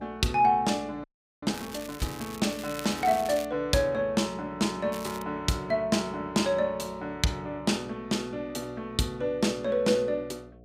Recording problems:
hum; 60 Hz, harmonics up to 720 Hz, SNR 24 dB
frozen audio; at 1 s
crackle; from 1.5 to 3.5 s and at 5 s; loose cable, SNR 14 dB

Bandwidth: 15.5 kHz